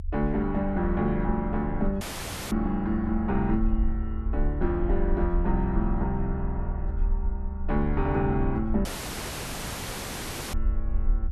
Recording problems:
rumble; below 70 Hz, SNR 4 dB
audio cutting out; at 2 s for 0.5 s and at 9 s for 1.5 s

